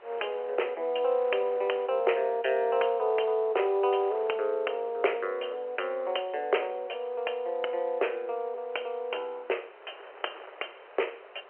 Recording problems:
phone line; 340 Hz to 3.1 kHz, G.711
wind on the microphone; below 1.6 kHz, SNR 22 dB

